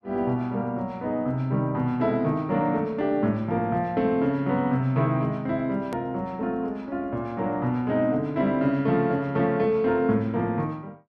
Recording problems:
click at an edit; at 6 s

